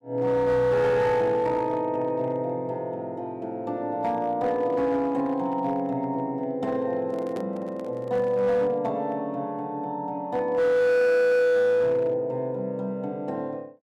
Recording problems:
distortion; hard clipping, signal-to-distortion ratio 12 dB
microphone handling noise; from 7 to 8.5 s; peak -7 dB vs average level

